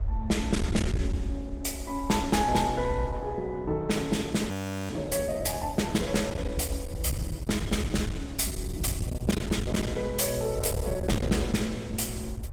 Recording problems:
lossy codec; Opus, log-spectral distance 3 dB
distortion; hard clipping, signal-to-distortion ratio 12 dB
rumble; below 120 Hz, SNR 6 dB
wind noise; below 940 Hz, SNR 25 dB
frozen audio; at 4.5 s

